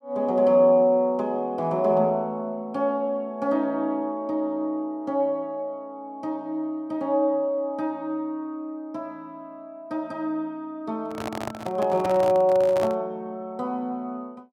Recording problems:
handling noise; from 11 to 13 s; peak -3 dB vs average level

